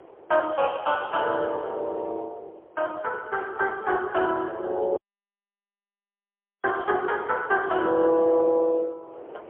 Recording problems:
telephone audio; 300 Hz to 3.3 kHz, AMR-NB, then MP3
wind on the microphone; below 690 Hz, SNR 20 dB
audio cutting out; at 5 s for 1.5 s

